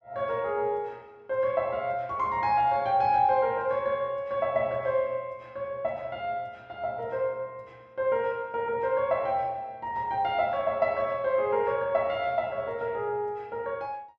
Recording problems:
none

